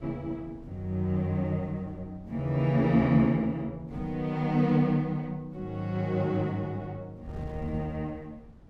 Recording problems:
wind noise; below 180 Hz, SNR 20 dB

